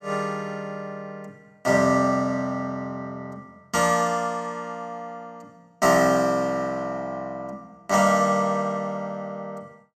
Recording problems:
none

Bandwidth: 14.5 kHz